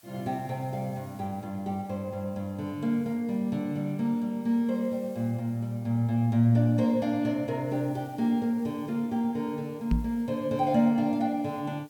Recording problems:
hiss; slope 0 dB per octave, SNR 29 dB
knock on the microphone; at 10 s; peak +5 dB vs average level

